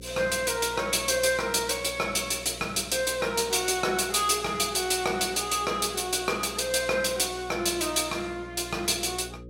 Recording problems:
electrical hum; 60 Hz, harmonics up to 540 Hz, SNR 20 dB

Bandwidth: 16.5 kHz